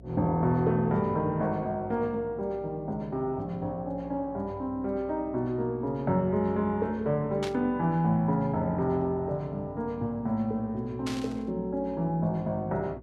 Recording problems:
hum; 60 Hz, harmonics up to 720 Hz, SNR 22 dB
burst of static; at 7.5 s and at 11 s; peak -4 dB vs average level

